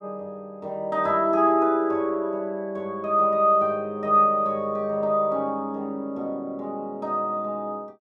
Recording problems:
none

